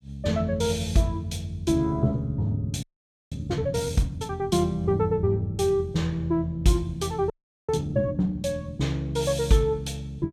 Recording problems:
audio freezing; at 3 s and at 7.5 s

